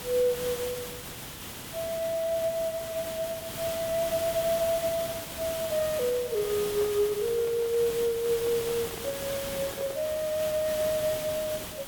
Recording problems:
hiss; slope -2 dB per octave, SNR 7 dB
handling noise; from 6.5 to 10 s; peak -7 dB vs average level

